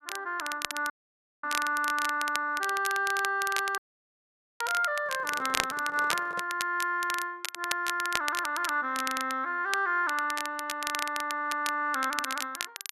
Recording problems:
crackle; vinyl, SNR 6 dB
audio cutting out; at 1 s for 0.5 s and at 4 s for 1 s
microphone handling noise; from 5 to 6.5 s; peak -9 dB vs average level

